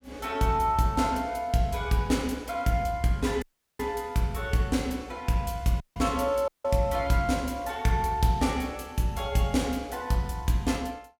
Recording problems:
dropout; at 3.5 s, at 6 s and at 6.5 s

